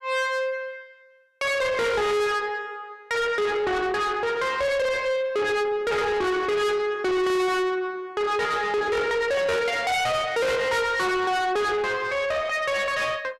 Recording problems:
distortion; soft clipping, signal-to-distortion ratio 6 dB

